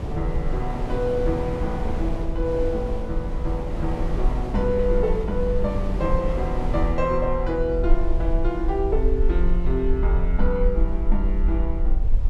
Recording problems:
hum; 60 Hz, harmonics up to 720 Hz, SNR 23 dB
low-frequency rumble; below 48 Hz, SNR 1 dB
wind noise; below 320 Hz, SNR 6 dB

